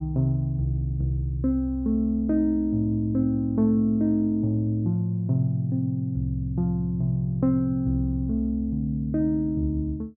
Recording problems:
none

